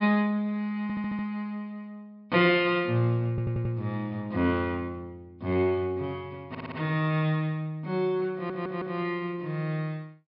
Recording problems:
treble cut off; nothing above 5.5 kHz
audio stuttering; 4 times, first at 1 s

